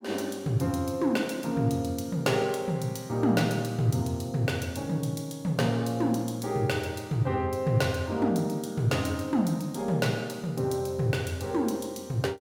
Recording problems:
none

